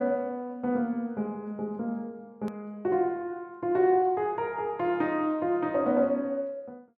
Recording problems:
click at an edit; at 2.5 s

